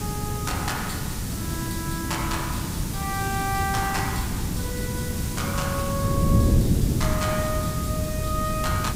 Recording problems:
hiss; slope -1 dB per octave, SNR 4 dB
wind noise; below 210 Hz, SNR -3 dB

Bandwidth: 15.5 kHz